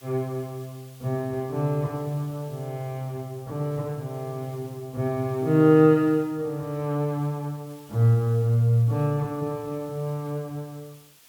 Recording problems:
background hiss; slope +1 dB per octave, SNR 26 dB

